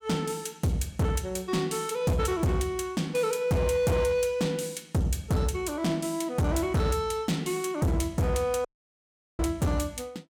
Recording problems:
distorted audio; hard clipping, signal-to-distortion ratio 8 dB
audio cutting out; at 8.5 s for 0.5 s

